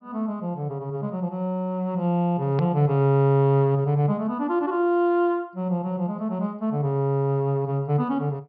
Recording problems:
treble missing; nothing above 5.5 kHz
hard cut with a click; at 2.5 s

